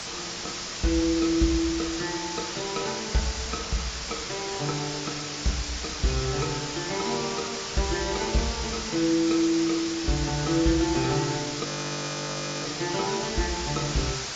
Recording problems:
lossy compression; AAC, log-spectral distance 18 dB, nothing above 7.3 kHz
background hiss; slope 0 dB per octave, SNR 4 dB
audio freezing; at 12 s for 1 s

